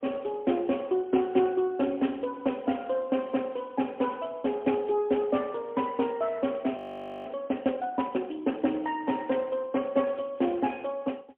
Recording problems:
telephone audio; 220 Hz to 3.3 kHz, AMR-NB, then MP3
audio freezing; at 7 s

